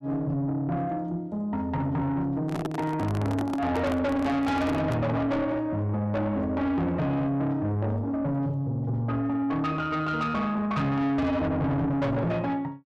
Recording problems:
distortion; soft clipping, signal-to-distortion ratio 7 dB
handling noise; from 2.5 to 5 s; peak -1 dB vs average level

